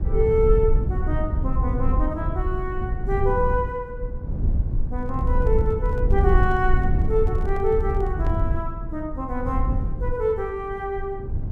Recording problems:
hum; 50 Hz, harmonics up to 1.6 kHz, SNR 24 dB
rumble; below 82 Hz, SNR -1 dB
microphone handling noise; from 5 to 8.5 s; peak -9 dB vs average level

